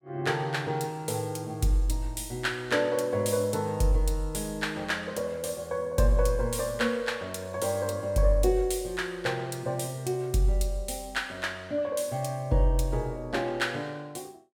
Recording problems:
none

